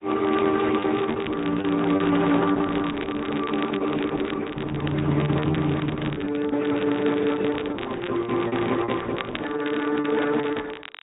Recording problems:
low-pass filter; nothing above 3.8 kHz
lossy codec; Speex, then Opus, log-spectral distance 4 dB
crackling; vinyl, SNR 14 dB
packet loss; 7% of the sound replaced, filled with repeated pitch periods

